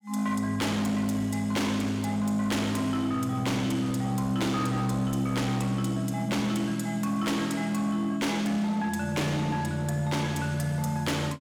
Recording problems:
distorted audio; hard clipping, signal-to-distortion ratio 12 dB

